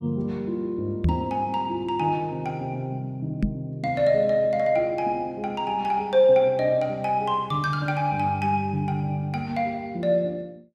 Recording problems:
knock on the microphone; at 1 s and at 3.5 s; peak +5 dB vs average level

